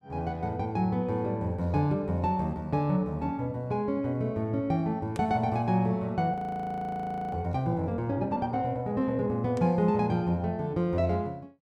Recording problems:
frozen audio; at 6.5 s for 1 s

